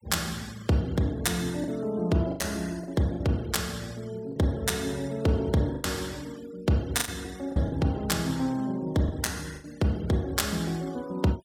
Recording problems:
denoising artefacts; signal-to-artefact ratio 22 dB
packet loss; 5% of the sound replaced, filled with the last packet

